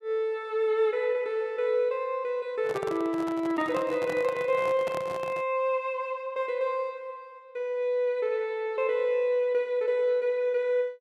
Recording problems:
microphone handling noise; from 2.5 to 5.5 s; peak -5 dB vs average level

